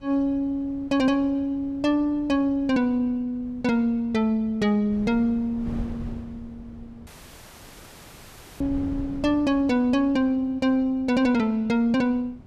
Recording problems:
wind on the microphone; below 200 Hz, SNR 19 dB
audio cutting out; at 7 s for 1.5 s

